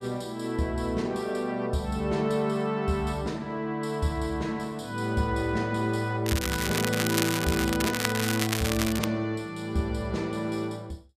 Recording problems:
crackling; from 6.5 to 9 s; loose cable, SNR 2 dB

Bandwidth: 14.5 kHz